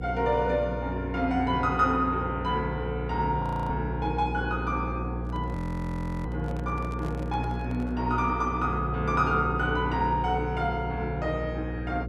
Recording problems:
electrical hum; 60 Hz, harmonics up to 540 Hz, SNR 5 dB
frozen audio; at 3.5 s and at 5.5 s for 0.5 s
microphone handling noise; from 5 to 8 s; peak -10 dB vs average level

